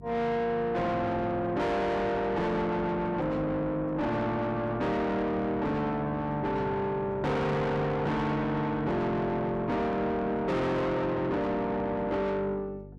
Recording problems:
distortion; soft clipping, signal-to-distortion ratio 6 dB
hum; 50 Hz, harmonics up to 500 Hz, SNR 18 dB

